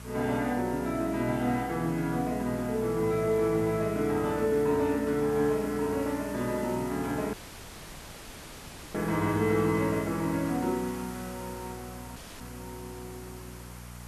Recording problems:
hum; 60 Hz, harmonics up to 660 Hz, SNR 17 dB
background hiss; SNR 17 dB
dropout; at 7.5 s for 1.5 s and at 12 s

